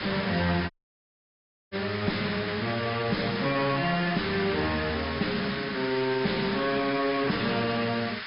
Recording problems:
treble cut off; nothing above 5.2 kHz
codec artefacts; AAC, log-spectral distance 17 dB
distorted audio; soft clipping, signal-to-distortion ratio 6 dB
hiss; SNR 6 dB
dropout; at 0.5 s for 1 s

